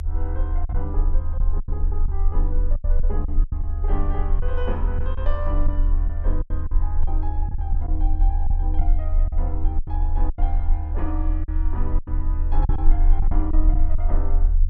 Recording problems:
low-frequency rumble; below 40 Hz, SNR -10 dB
lost packets; 8% of the sound replaced, filled with silence

